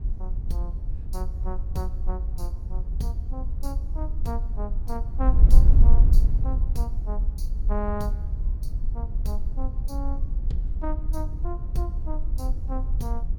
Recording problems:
wind on the microphone; below 52 Hz, SNR -9 dB

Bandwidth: 18 kHz